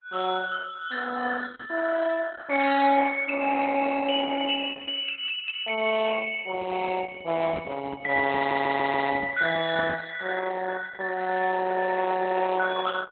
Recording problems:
lossy compression; Opus, log-spectral distance 5 dB, nothing above 3.4 kHz
microphone handling noise; from 6.5 to 10 s; peak -7 dB vs average level
audio stuttering; at 8.5 s

